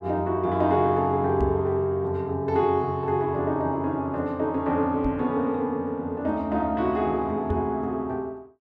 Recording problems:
microphone bump; at 1.5 s, at 5 s and at 7.5 s; peak 0 dB vs average level

